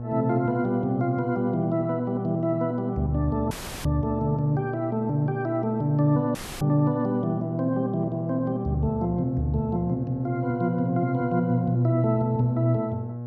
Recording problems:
hum; 60 Hz, harmonics up to 840 Hz, SNR 9 dB
dropout; at 3.5 s and at 6.5 s

